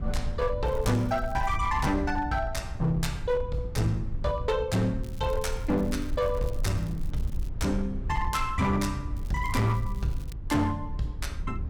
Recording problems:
distorted audio; hard clipping, uneven, signal-to-distortion ratio 12 dB
rumble; below 78 Hz, SNR 7 dB
crackle; at 0.5 s, from 5 to 7.5 s and from 9 to 10 s; loose cable, SNR 25 dB

